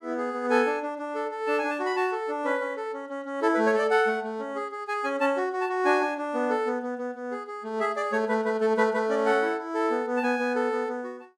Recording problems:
none

